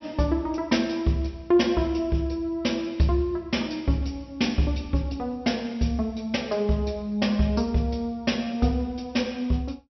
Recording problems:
treble cut off; nothing above 5.9 kHz

